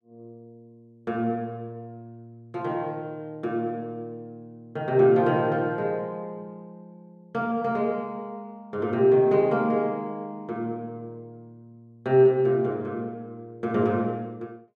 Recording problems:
none

